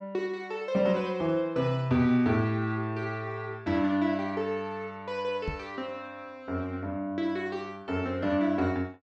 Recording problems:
microphone bump; at 5.5 s; peak -2 dB vs average level

